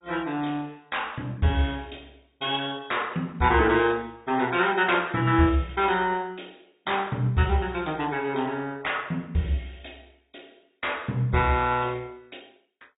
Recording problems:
treble cut off; nothing above 3.7 kHz
lossy codec; MP2, log-spectral distance 5 dB

